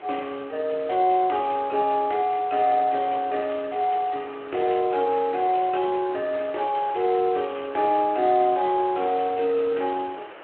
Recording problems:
telephone audio; 300 Hz to 3.3 kHz, Speex
background hiss; SNR 19 dB

